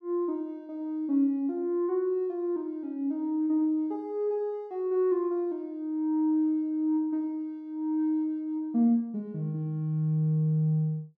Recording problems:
none

